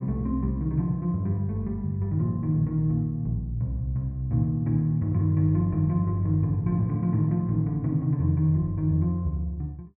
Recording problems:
none

